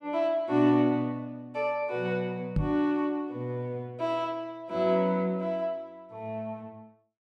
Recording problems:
knock on the microphone; at 2.5 s; peak +4 dB vs average level

